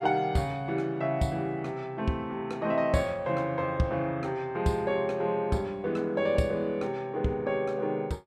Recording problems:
none

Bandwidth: 14.5 kHz